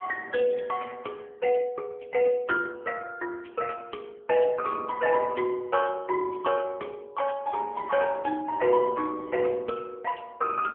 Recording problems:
phone line; 220 Hz to 2.5 kHz, AMR-NB

